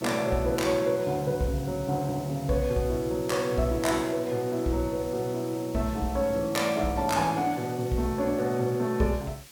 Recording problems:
hiss; slope +1 dB per octave, SNR 19 dB

